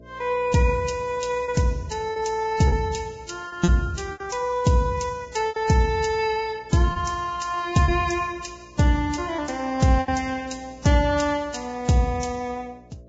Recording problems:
lossy codec; Vorbis, log-spectral distance 4 dB, nothing above 7.6 kHz
hum; 60 Hz, harmonics up to 660 Hz, SNR 26 dB
packet loss; 5% of the sound replaced, filled with repeated pitch periods

